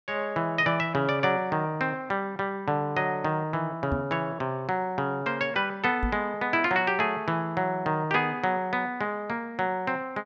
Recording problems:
microphone bump; at 4 s and at 6 s; peak +1 dB vs average level

